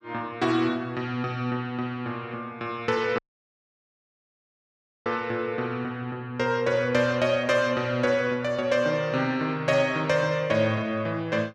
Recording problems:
audio cutting out; at 3 s for 2 s

